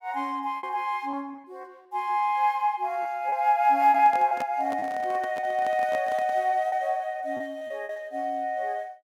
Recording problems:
packet loss; 7% of the sound replaced, filled with repeated pitch periods
handling noise; from 4 to 6.5 s; peak -6 dB vs average level

